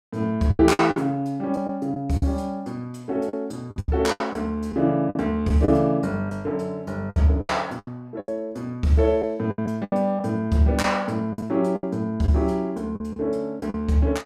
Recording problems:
lost packets; 10% of the sound replaced, filled with the last packet

